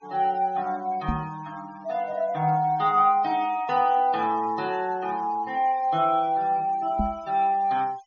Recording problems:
low-pass filter; nothing above 6.7 kHz
noise reduction artefacts; signal-to-artefact ratio 25 dB
microphone bump; at 1 s and at 7 s; peak 0 dB vs average level

